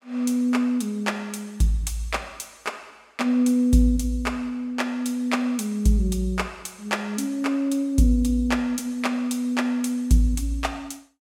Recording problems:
none

